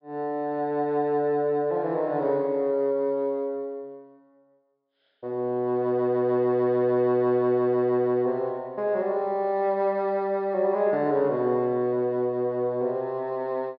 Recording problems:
treble missing; nothing above 5.5 kHz

